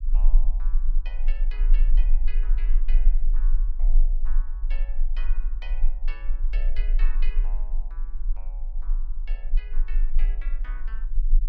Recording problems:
low-frequency rumble; below 30 Hz, strongest tone 20 Hz, SNR -21 dB

